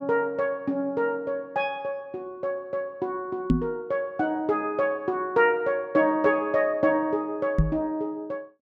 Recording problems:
microphone bump; at 3.5 s and at 7.5 s; peak +9 dB vs average level

